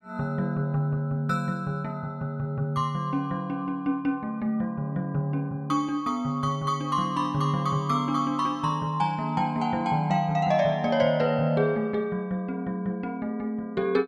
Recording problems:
none

